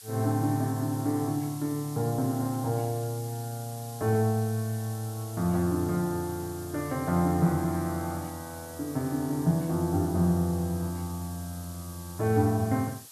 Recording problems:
background hiss; SNR 16 dB

